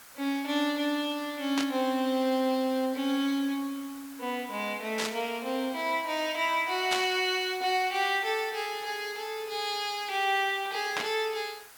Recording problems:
background hiss; SNR 19 dB
burst of static; 4 times, first at 1.5 s; peak +2 dB vs average level

